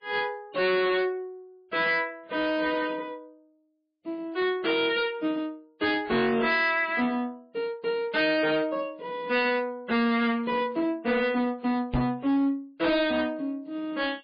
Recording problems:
lossy compression; MP3, log-spectral distance 2 dB, nothing above 4.6 kHz
distortion; hard clipping, signal-to-distortion ratio 11 dB
knock on the microphone; at 12 s; peak +2 dB vs average level

